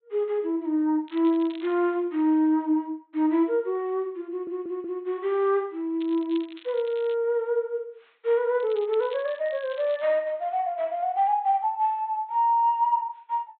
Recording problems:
treble cut off; nothing above 4 kHz
crackling; at 1 s, from 6 to 7 s and from 8.5 to 10 s; loose cable, SNR 23 dB
audio stuttering; at 4.5 s

